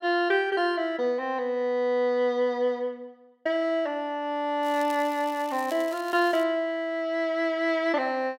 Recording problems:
crackle; from 4.5 to 6.5 s; loose cable, SNR 20 dB

